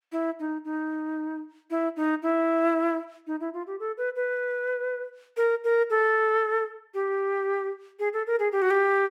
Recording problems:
none

